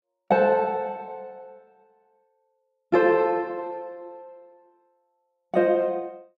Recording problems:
none

